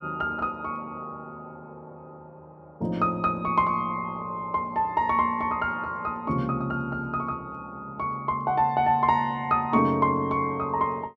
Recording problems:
none

